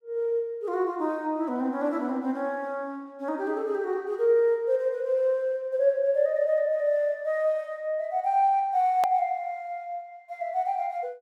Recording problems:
hard cut with a click; at 9 s

